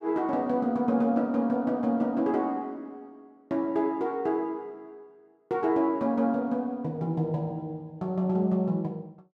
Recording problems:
none

